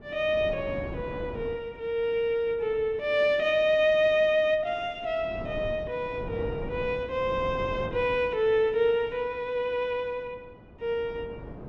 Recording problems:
wind on the microphone; below 430 Hz, SNR 14 dB

